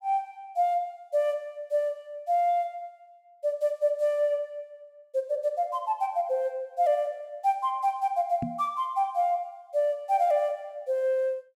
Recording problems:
microphone bump; at 8.5 s; peak -1 dB vs average level

